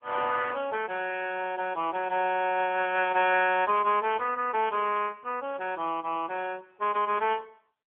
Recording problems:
telephone audio; 300 Hz to 3.2 kHz, AMR-NB

